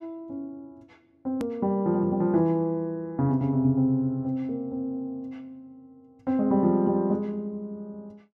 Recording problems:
hard cut with a click; at 1.5 s

